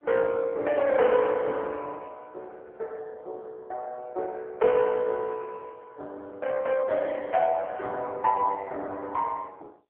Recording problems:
telephone audio; 320 Hz to 3.4 kHz, AMR-NB

